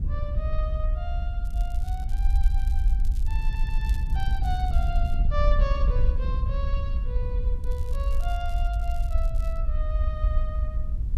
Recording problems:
hiss; slope -6 dB per octave, SNR 23 dB
rumble; below 56 Hz, SNR -9 dB
wind noise; below 92 Hz, SNR -3 dB
crackling; from 1.5 to 5 s and from 7.5 to 9.5 s; loose cable, SNR 17 dB
stutter; at 3.5 s

